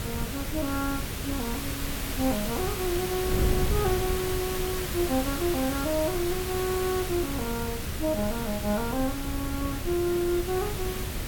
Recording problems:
background hiss; slope -2 dB per octave, SNR 4 dB
wind on the microphone; below 170 Hz, SNR 5 dB

